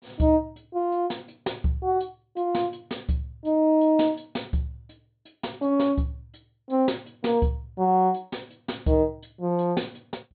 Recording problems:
low-pass filter; nothing above 4.2 kHz

